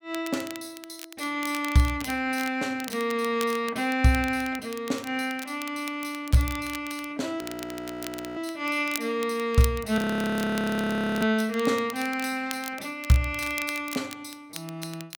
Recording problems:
crackle; vinyl, SNR 14 dB
audio freezing; at 7.5 s for 1 s and at 10 s for 1 s

